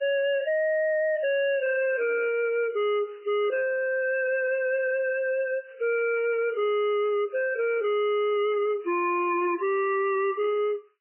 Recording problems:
lossy codec; MP3, log-spectral distance 3 dB, nothing above 2.4 kHz
distortion; hard clipping, signal-to-distortion ratio 5 dB

